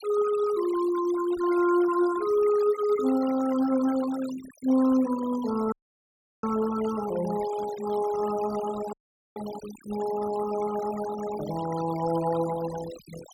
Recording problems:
noise reduction artefacts; signal-to-artefact ratio 16 dB
audio cutting out; at 5.5 s for 0.5 s and at 9 s

